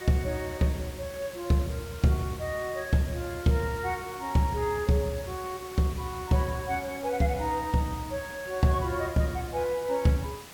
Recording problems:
background hiss; slope -2 dB per octave, SNR 16 dB

